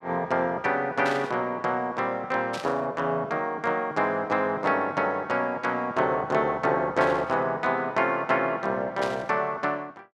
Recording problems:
burst of static; 4 times, first at 1 s; peak -5 dB vs average level

